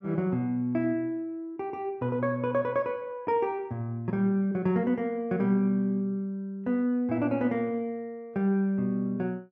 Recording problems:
none

